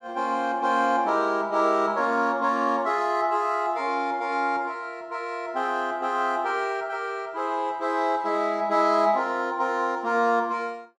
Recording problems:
none

